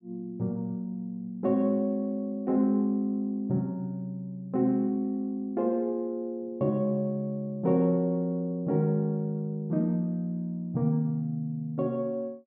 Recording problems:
none

